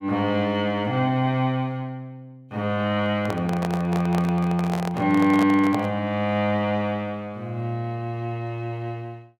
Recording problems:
microphone handling noise; from 3 to 6 s; peak -1 dB vs average level

